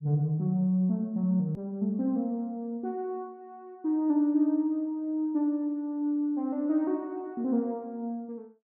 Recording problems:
edit click; at 1.5 s

